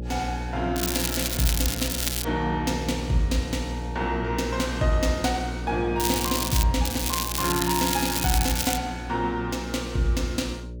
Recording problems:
hum; 60 Hz, harmonics up to 600 Hz, SNR 8 dB
crackle; from 1 to 2.5 s, at 6 s and from 7 to 9 s; loose cable, SNR 1 dB

